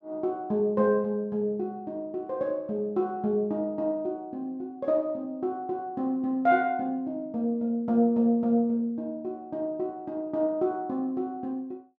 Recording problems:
none

